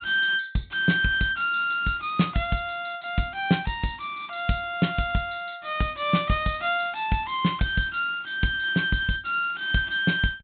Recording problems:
treble cut off; nothing above 4 kHz

